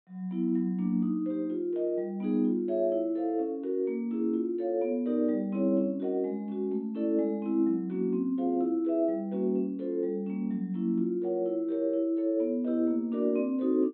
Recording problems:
treble missing; nothing above 4 kHz

